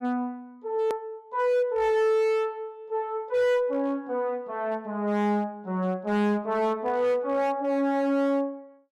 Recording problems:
distorted audio; hard clipping, signal-to-distortion ratio 10 dB
hard cut with a click; at 1 s

